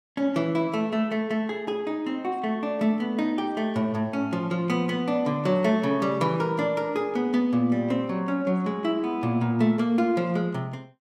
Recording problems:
none

